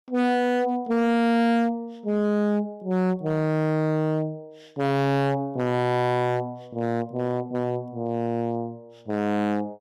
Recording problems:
distortion; hard clipping, signal-to-distortion ratio 7 dB

